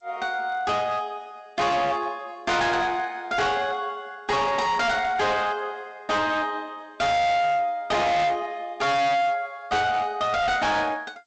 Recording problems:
lossy codec; G.722, log-spectral distance 2 dB, nothing above 7.8 kHz
distorted audio; hard clipping, uneven, signal-to-distortion ratio 6 dB

